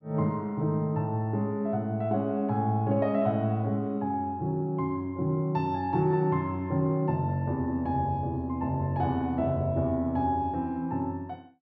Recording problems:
none

